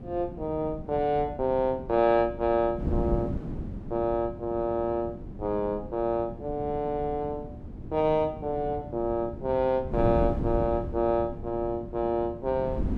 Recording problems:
wind on the microphone; below 250 Hz, SNR 9 dB

